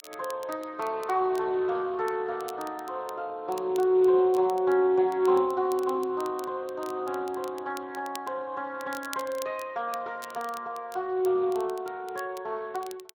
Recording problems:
lossy codec; Speex, log-spectral distance 2 dB
crackle; vinyl, SNR 21 dB

